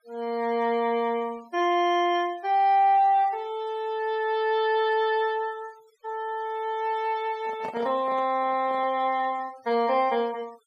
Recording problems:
noise reduction artefacts; signal-to-artefact ratio 26 dB
microphone handling noise; from 7.5 to 9 s; peak -8 dB vs average level

